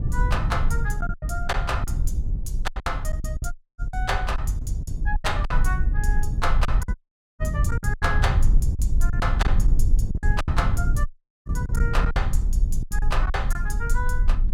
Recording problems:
low-frequency rumble; below 46 Hz, SNR -2 dB
wind noise; below 120 Hz, SNR -2 dB
packet loss; 11% of the sound replaced, filled with silence
dropout; at 3.5 s, at 7 s and at 11 s

